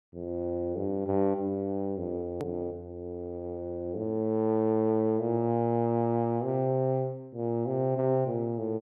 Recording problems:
hard cut with a click; at 2.5 s

